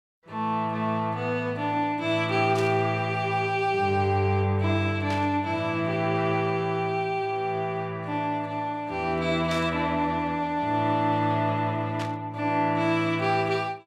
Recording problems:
burst of static; 4 times, first at 2.5 s; peak -7 dB vs average level

